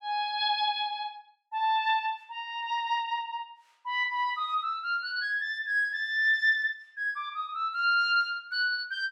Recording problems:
none

